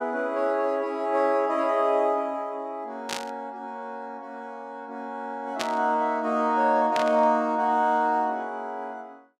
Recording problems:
burst of static; at 3 s, at 5.5 s and at 7 s; peak 0 dB vs average level

